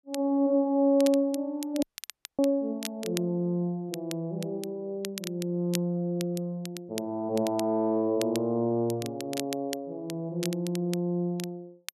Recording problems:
crackle; vinyl, SNR 13 dB
dropout; at 2 s for 0.5 s

